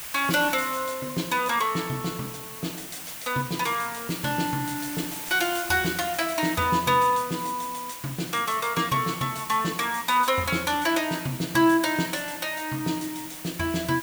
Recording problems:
hiss; SNR 10 dB

